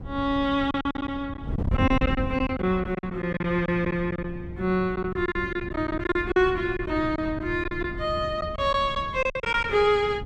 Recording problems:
wind on the microphone; below 170 Hz, SNR 9 dB
packet loss; 11% of the sound replaced, filled with silence

